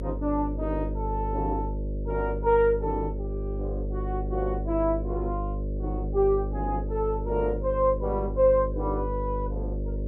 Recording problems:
hum; 50 Hz, harmonics up to 600 Hz, SNR 4 dB

